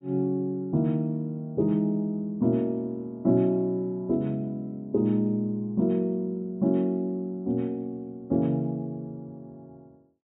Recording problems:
low-pass filter; nothing above 4 kHz

